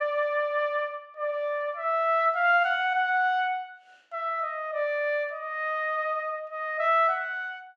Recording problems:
none

